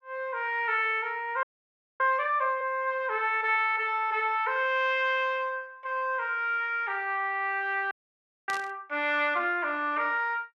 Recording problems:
audio freezing; at 1.5 s for 0.5 s and at 8 s for 0.5 s
static burst; at 8.5 s; peak -8 dB vs average level

